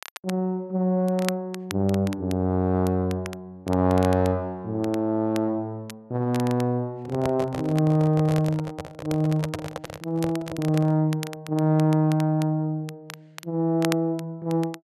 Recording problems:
crackling; vinyl, SNR 17 dB
packet loss; 0.7% of the sound replaced, filled with repeated pitch periods
microphone handling noise; from 7 to 11 s; peak -1 dB vs average level

